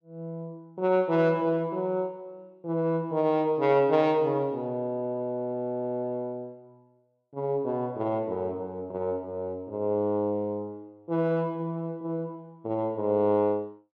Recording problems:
none

